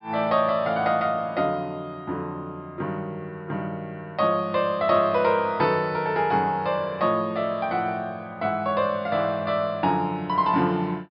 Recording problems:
treble cut off; nothing above 5.5 kHz

